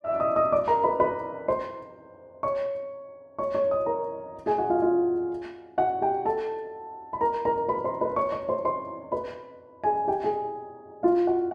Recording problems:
none

